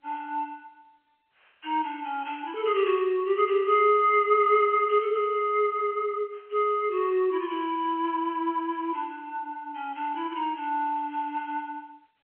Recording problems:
telephone audio; 340 Hz to 3.2 kHz, G.711

